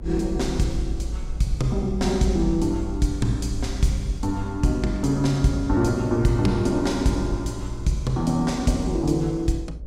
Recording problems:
electrical hum; 60 Hz, harmonics up to 600 Hz, SNR 28 dB
rumble; below 58 Hz, strongest tone 56 Hz, SNR 10 dB

